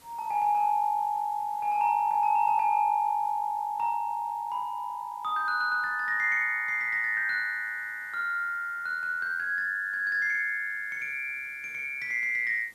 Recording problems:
background hiss; slope -2 dB per octave, SNR 30 dB

